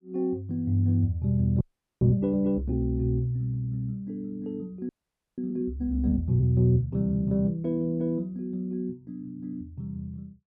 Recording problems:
frozen audio; at 1.5 s and at 5 s

